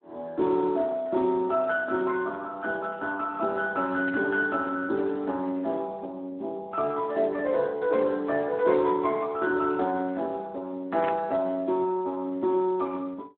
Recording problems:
telephone audio; 240 Hz to 3 kHz, Speex
static burst; at 4 s and at 11 s; peak -5 dB vs average level

